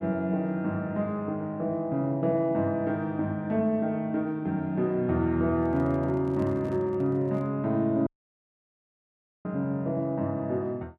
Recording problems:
microphone handling noise; from 5.5 to 7.5 s; peak -9 dB vs average level
audio cutting out; at 8 s for 1.5 s

